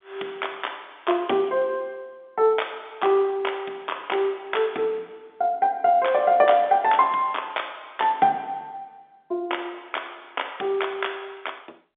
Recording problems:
phone line; 260 Hz to 3.6 kHz, G.711

